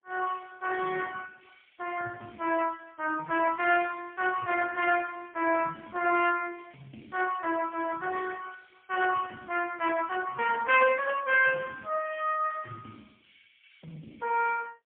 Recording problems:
phone line; 240 Hz to 3.3 kHz, AMR-NB, then MP3

